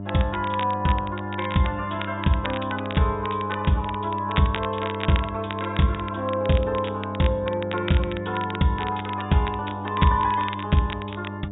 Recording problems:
treble missing; nothing above 4 kHz
hum; 50 Hz, harmonics up to 1 kHz, SNR 9 dB
crackling; vinyl, SNR 13 dB

